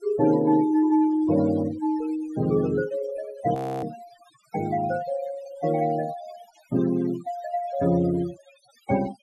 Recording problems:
denoising artefacts; signal-to-artefact ratio 17 dB
audio freezing; at 3.5 s

